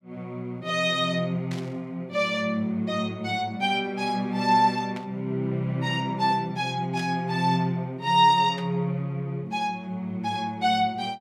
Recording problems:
static burst; 4 times, first at 1.5 s; peak -11 dB vs average level

